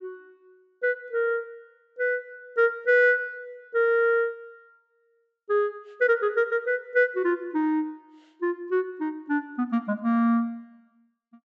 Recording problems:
treble cut off; nothing above 8 kHz

